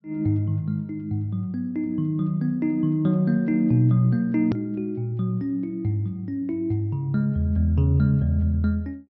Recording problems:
low-pass filter; nothing above 5.8 kHz
edit click; at 4.5 s

